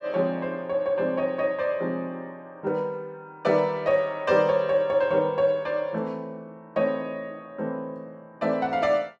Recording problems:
none

